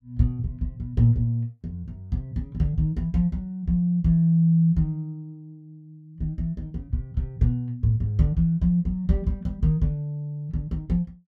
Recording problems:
none

